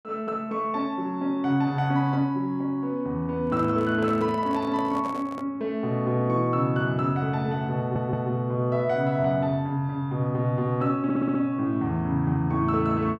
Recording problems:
microphone handling noise; from 3.5 to 5.5 s; peak -9 dB vs average level
stutter; at 8 s and at 11 s

